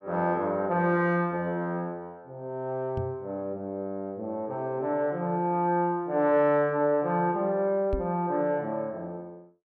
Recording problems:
knock on the microphone; at 3 s and at 8 s; peak 0 dB vs average level

